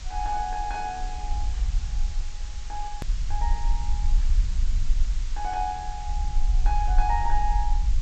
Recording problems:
treble missing; nothing above 8 kHz
background hiss; slope +1 dB per octave, SNR 13 dB
low-frequency rumble; below 44 Hz, strongest tone 24 Hz, SNR -2 dB
hard cut with a click; at 3 s

